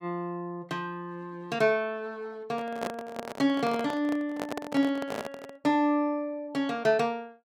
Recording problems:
microphone handling noise; from 2.5 to 5.5 s; peak 0 dB vs average level

